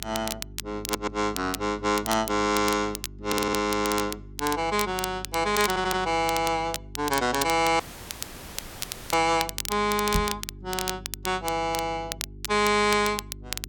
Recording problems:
electrical hum; 50 Hz, harmonics up to 400 Hz, SNR 18 dB
crackle; vinyl, SNR 9 dB
stutter; at 1 s, at 3.5 s and at 5.5 s
audio cutting out; at 8 s for 1.5 s
microphone thump; at 10 s; peak +2 dB vs average level

